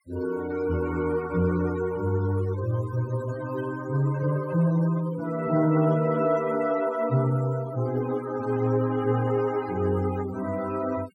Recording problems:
denoising artefacts; signal-to-artefact ratio 17 dB

